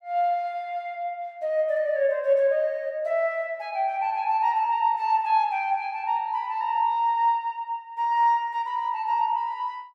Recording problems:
none

